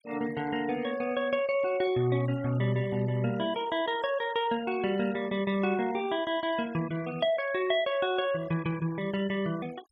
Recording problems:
noise reduction artefacts; signal-to-artefact ratio 17 dB

